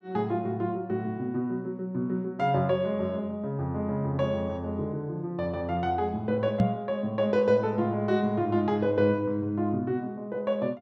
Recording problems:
microphone thump; at 6.5 s; peak +7 dB vs average level

